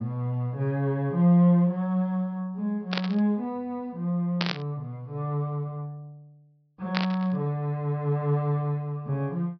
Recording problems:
treble cut off; nothing above 5.5 kHz
static burst; at 3 s, at 4.5 s and at 7 s; peak +3 dB vs average level

